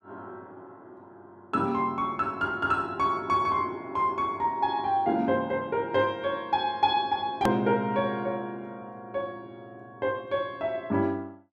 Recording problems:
hard cut with a click; at 7.5 s

